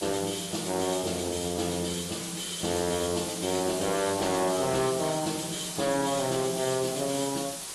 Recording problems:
lossy codec; AAC, log-spectral distance 15 dB, nothing above 12 kHz
distorted audio; hard clipping, signal-to-distortion ratio 11 dB
background hiss; slope 0 dB per octave, SNR 6 dB

